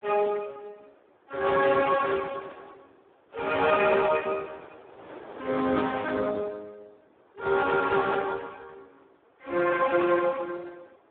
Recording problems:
phone line; 300 Hz to 2.7 kHz, Speex
wind on the microphone; below 1 kHz, SNR 24 dB

